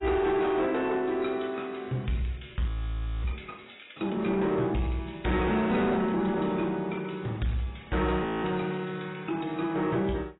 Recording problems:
lossy compression; AAC, log-spectral distance 4 dB, nothing above 3.9 kHz
distorted audio; soft clipping, signal-to-distortion ratio 11 dB
frozen audio; at 2.5 s for 0.5 s and at 8 s

